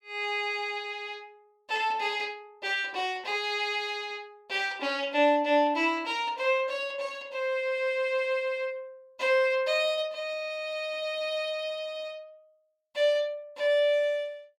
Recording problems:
none

